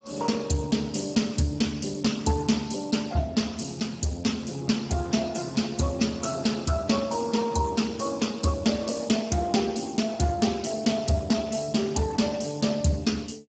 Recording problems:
lossy compression; Speex, log-spectral distance 6 dB, nothing above 7.6 kHz

